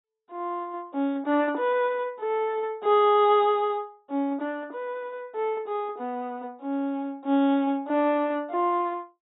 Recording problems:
low-pass filter; nothing above 4 kHz

